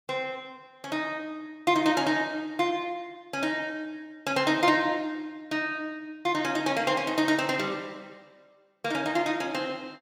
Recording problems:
none

